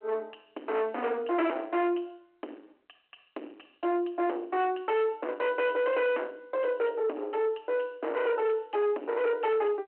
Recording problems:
phone line; 280 Hz to 3.1 kHz, G.726
distortion; soft clipping, signal-to-distortion ratio 7 dB

